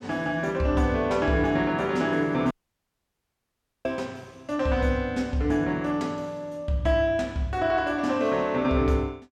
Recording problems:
dropout; at 2.5 s for 1.5 s

